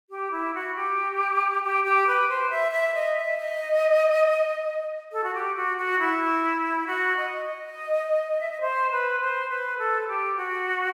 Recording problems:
none

